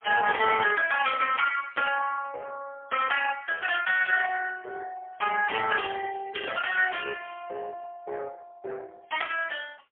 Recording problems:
telephone audio; 370 Hz to 3.2 kHz, AMR-NB, then MP3

